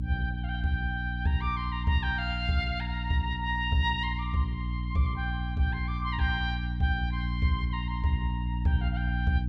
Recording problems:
electrical hum; 60 Hz, harmonics up to 300 Hz, SNR 2 dB

